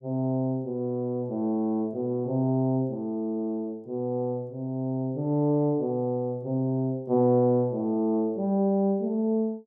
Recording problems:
none

